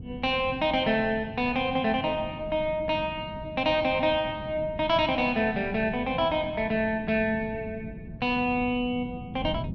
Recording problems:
wind on the microphone; below 220 Hz, SNR 13 dB

